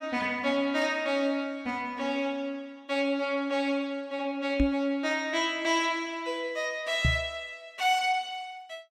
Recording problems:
knock on the microphone; at 4.5 s and at 7 s; peak +6 dB vs average level

